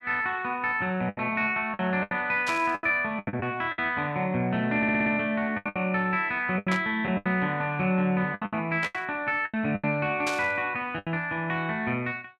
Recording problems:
lost packets; 11% of the sound replaced, filled with the last packet
burst of static; 4 times, first at 2.5 s; peak -2 dB vs average level
audio stuttering; at 5 s

